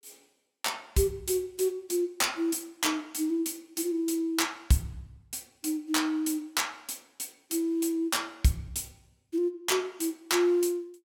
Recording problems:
none

